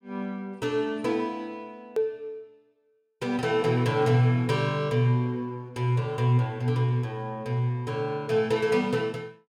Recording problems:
hard cut with a click; at 2 s

